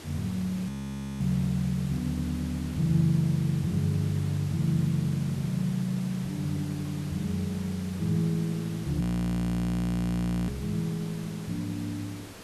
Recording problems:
hiss; slope -4 dB per octave, SNR 15 dB
audio freezing; at 0.5 s for 0.5 s and at 9 s for 1.5 s

